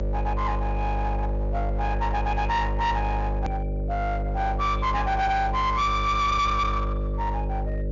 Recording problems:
treble missing; nothing above 7.1 kHz
distortion; hard clipping, signal-to-distortion ratio 10 dB
hum; 50 Hz, harmonics up to 1.1 kHz, SNR 2 dB
hard cut with a click; at 3.5 s

